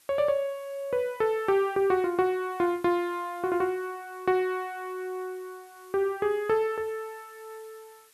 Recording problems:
hiss; slope +1 dB per octave, SNR 27 dB

